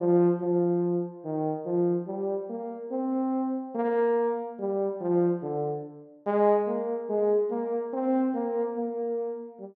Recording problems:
none

